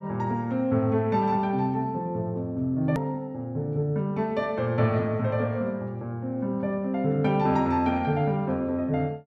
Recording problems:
hard cut with a click; at 3 s

